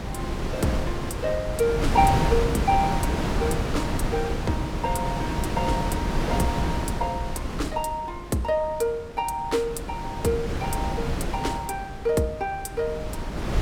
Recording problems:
wind noise; below 500 Hz, SNR 1 dB

